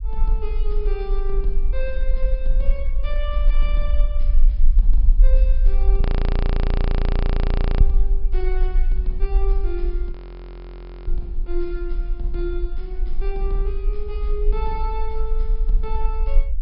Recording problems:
treble missing; nothing above 5.5 kHz
low-frequency rumble; below 40 Hz, SNR -10 dB
frozen audio; at 6 s for 2 s and at 10 s for 1 s

